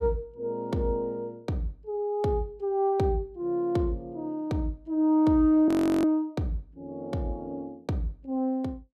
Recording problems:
frozen audio; at 5.5 s

